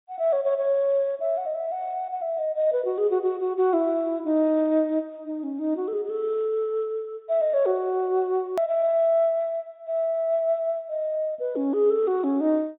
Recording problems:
low-pass filter; nothing above 4 kHz
click at an edit; at 8.5 s

